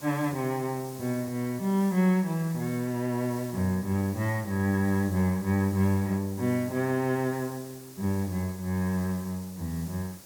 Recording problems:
hiss; SNR 17 dB

